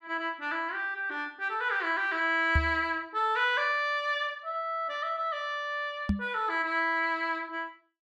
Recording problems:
knock on the microphone; at 2.5 s and at 6 s; peak +6 dB vs average level

